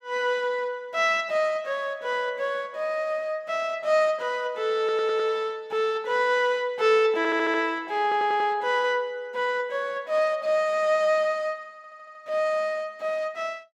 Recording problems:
stutter; 4 times, first at 5 s

